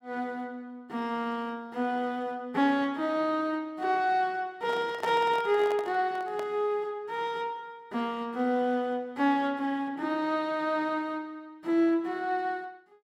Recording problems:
handling noise; from 4.5 to 6.5 s; peak -2 dB vs average level

